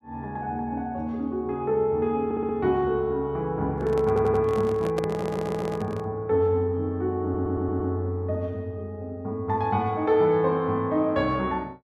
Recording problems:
audio stuttering; 4 times, first at 2.5 s
microphone handling noise; from 4 to 6 s; peak -1 dB vs average level

